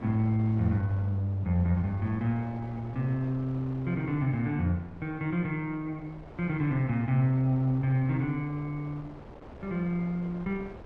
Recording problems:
wind noise; below 660 Hz, SNR 18 dB

